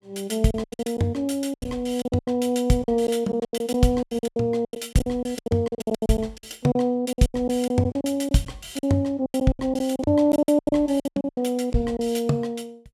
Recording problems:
packet loss; 19% of the sound replaced, filled with silence

